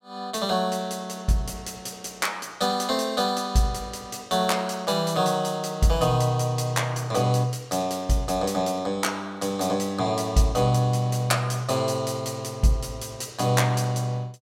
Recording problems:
none

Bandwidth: 16 kHz